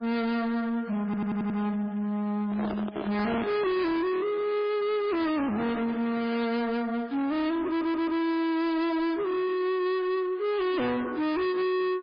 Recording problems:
lossy codec; MP3, then MP3, log-spectral distance 2 dB, nothing above 4.1 kHz
distorted audio; soft clipping, signal-to-distortion ratio 6 dB
audio stuttering; at 1 s and at 7.5 s
handling noise; from 2.5 to 4 s; peak -1 dB vs average level

